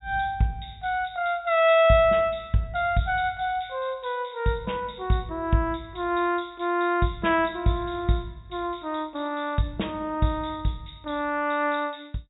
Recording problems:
treble cut off; nothing above 4 kHz

